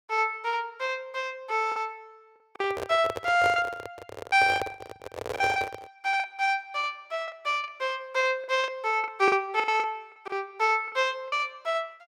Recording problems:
lost packets; 9% of the sound replaced, filled with the last packet
microphone handling noise; from 2.5 to 6 s; peak -1 dB vs average level

